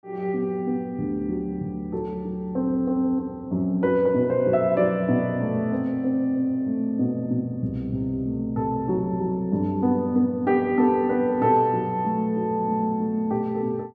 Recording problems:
none

